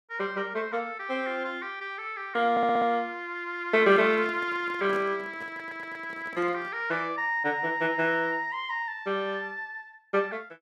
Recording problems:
stutter; at 2.5 s and at 5.5 s
handling noise; from 4 to 6.5 s; peak -9 dB vs average level

